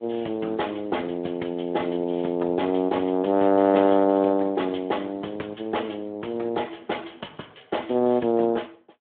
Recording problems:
telephone audio; 220 Hz to 3.4 kHz, Speex

